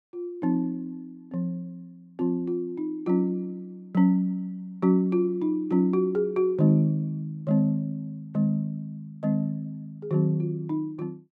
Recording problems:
none

